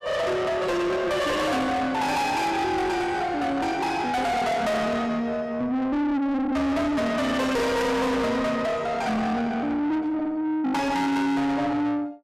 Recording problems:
distorted audio; soft clipping, signal-to-distortion ratio 6 dB

